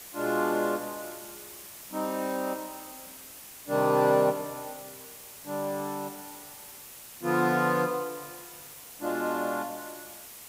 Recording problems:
hiss; slope -1 dB per octave, SNR 14 dB

